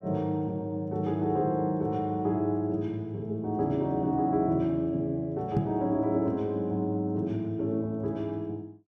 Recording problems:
microphone thump; at 5.5 s; peak +6 dB vs average level

